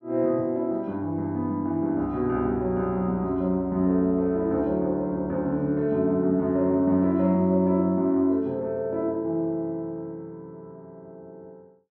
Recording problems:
none

